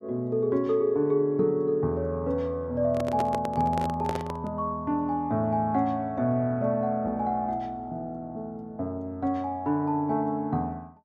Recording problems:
handling noise; from 3 to 4.5 s; peak -2 dB vs average level

